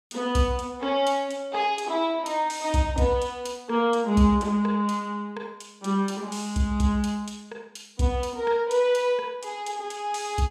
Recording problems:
none

